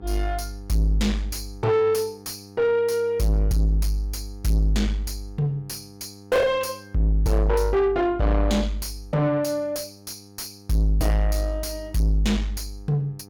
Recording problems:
distorted audio; soft clipping, signal-to-distortion ratio 6 dB
hum; 50 Hz, harmonics up to 1.3 kHz, SNR 22 dB

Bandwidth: 17.5 kHz